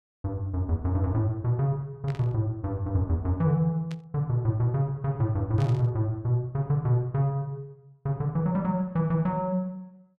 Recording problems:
static burst; at 2 s, at 4 s and at 5.5 s; peak -13 dB vs average level

